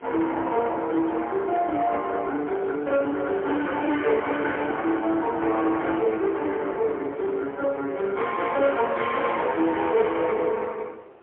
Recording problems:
phone line; 300 Hz to 3.3 kHz, AMR-NB, then MP3
distortion; soft clipping, signal-to-distortion ratio 12 dB
wind noise; below 1 kHz, SNR 22 dB

